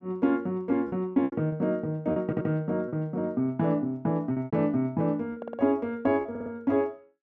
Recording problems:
lost packets; 7% of the sound replaced, filled with repeated pitch periods
stutter; at 2.5 s, at 5.5 s and at 6.5 s

